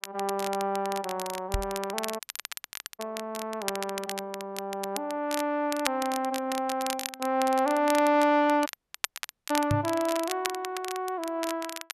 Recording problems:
crackling; vinyl, SNR 9 dB
microphone thump; at 1.5 s and at 9.5 s; peak +4 dB vs average level
dropout; at 2 s for 1 s and at 8.5 s for 1 s

